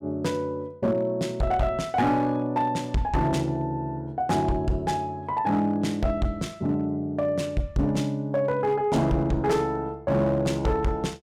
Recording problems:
distorted audio; hard clipping, signal-to-distortion ratio 12 dB

